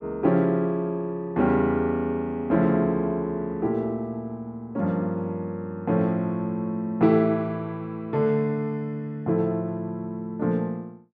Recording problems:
none

